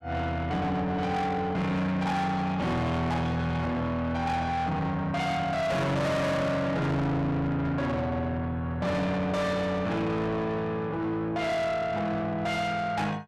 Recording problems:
distorted audio; soft clipping, signal-to-distortion ratio 7 dB

